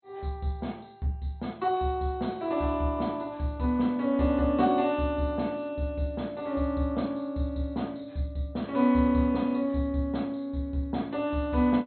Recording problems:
codec artefacts; MP2, log-spectral distance 2 dB, nothing above 4.2 kHz

